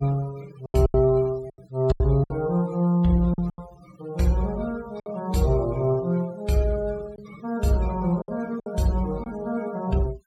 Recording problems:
noise reduction artefacts; signal-to-artefact ratio 22 dB
lost packets; 7% of the sound replaced, filled with silence

